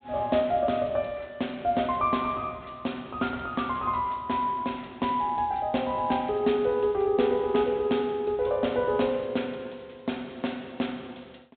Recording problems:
treble missing; nothing above 4 kHz

